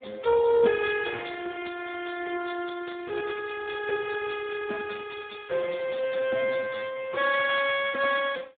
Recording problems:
telephone audio; 300 Hz to 3.4 kHz, Speex

